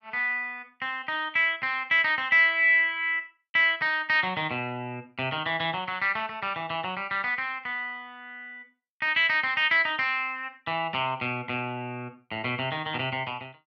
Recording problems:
none

